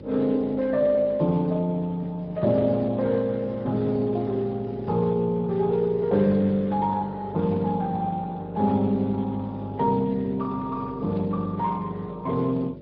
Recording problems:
treble missing; nothing above 5.5 kHz
lossy compression; Speex, log-spectral distance 2 dB
hum; 50 Hz, harmonics up to 650 Hz, SNR 17 dB

